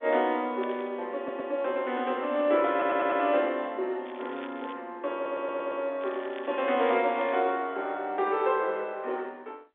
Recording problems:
telephone audio; 300 Hz to 3.6 kHz, G.711
crackle; at 0.5 s, at 4 s and from 6 to 7.5 s; loose cable, SNR 21 dB
stutter; at 1 s, at 2.5 s and at 5 s

